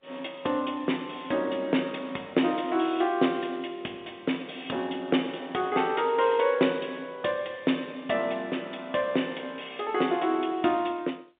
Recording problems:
telephone audio; 220 Hz to 3.7 kHz, G.711

